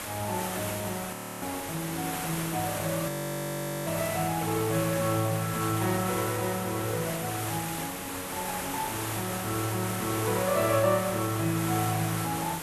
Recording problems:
background hiss; slope -3 dB per octave, SNR 4 dB
frozen audio; at 1 s and at 3 s for 1 s

